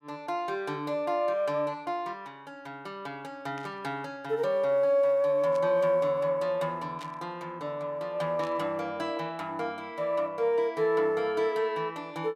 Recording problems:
static burst; 4 times, first at 3.5 s; peak -13 dB vs average level

